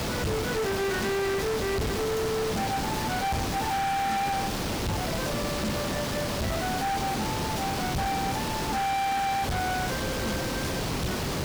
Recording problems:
distorted audio; hard clipping, signal-to-distortion ratio 6 dB
hiss; slope -4 dB per octave, SNR 1 dB

